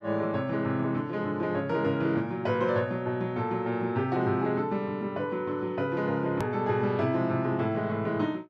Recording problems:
edit click; at 6.5 s

